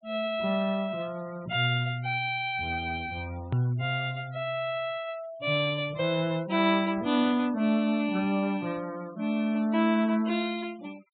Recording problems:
treble missing; nothing above 4 kHz
denoising artefacts; signal-to-artefact ratio 23 dB
edit click; at 3.5 s

